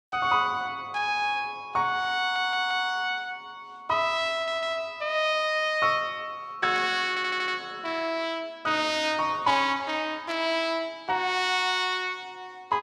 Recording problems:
audio stuttering; at 2 s, at 4.5 s and at 7 s
static burst; at 6.5 s and at 10 s; peak -10 dB vs average level

